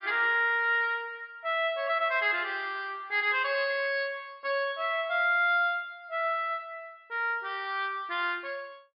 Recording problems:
low-pass filter; nothing above 5.5 kHz

